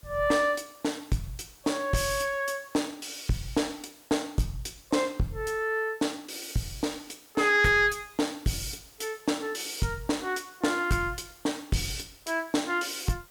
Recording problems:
distortion; soft clipping, signal-to-distortion ratio 11 dB
background hiss; slope -2 dB per octave, SNR 25 dB

